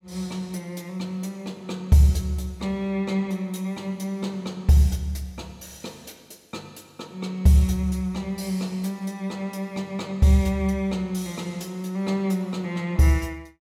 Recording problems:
none

